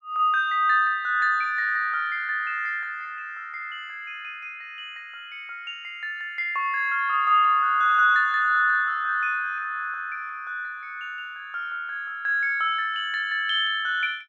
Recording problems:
none

